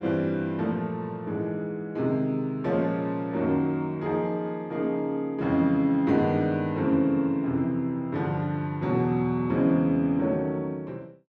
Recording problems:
none

